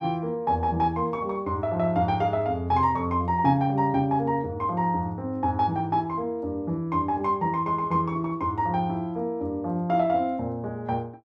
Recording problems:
none

